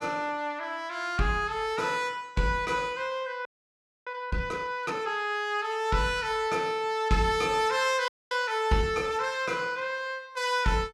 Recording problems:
frozen audio; at 3.5 s for 0.5 s and at 8 s

